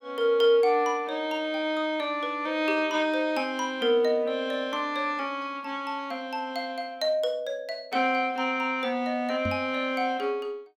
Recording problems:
knock on the microphone; at 9.5 s; peak -2 dB vs average level

